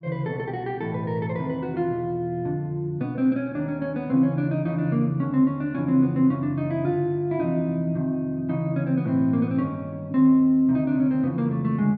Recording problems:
none

